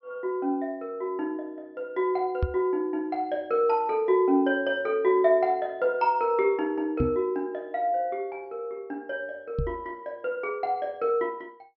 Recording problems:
treble missing; nothing above 5.6 kHz
knock on the microphone; at 2.5 s, at 7 s and at 9.5 s; peak +4 dB vs average level

